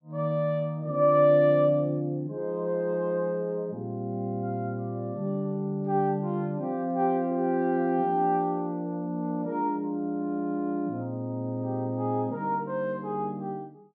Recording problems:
none

